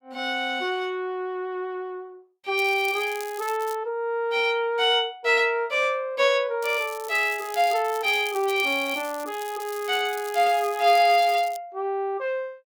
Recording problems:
crackling; from 2.5 to 4 s and from 6.5 to 12 s; loose cable, SNR 17 dB

